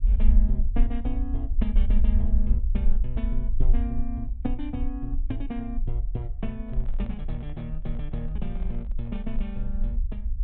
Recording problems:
treble missing; nothing above 4 kHz
rumble; below 48 Hz, strongest tone 20 Hz, SNR -6 dB
microphone handling noise; from 6.5 to 9.5 s; peak -9 dB vs average level

